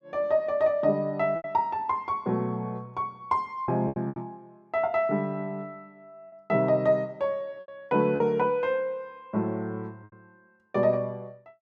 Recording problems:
lost packets; 5% of the sound replaced, filled with repeated pitch periods

